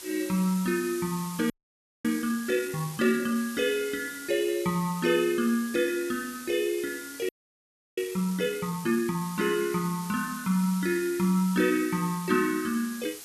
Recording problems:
hiss; slope +1 dB per octave, SNR 13 dB
frozen audio; at 1.5 s for 0.5 s and at 7.5 s for 0.5 s

